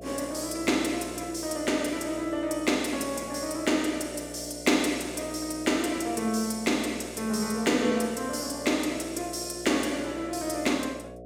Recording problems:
hum; 60 Hz, harmonics up to 720 Hz, SNR 15 dB

